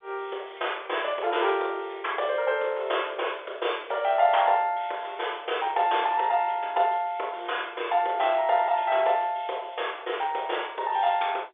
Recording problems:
phone line; 320 Hz to 3.6 kHz, G.711

